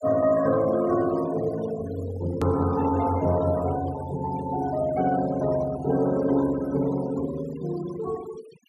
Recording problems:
denoising artefacts; signal-to-artefact ratio 17 dB
click at an edit; at 2.5 s

